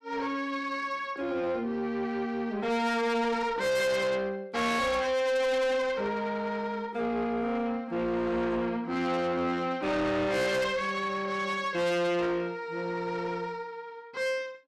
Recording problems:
distortion; soft clipping, signal-to-distortion ratio 7 dB

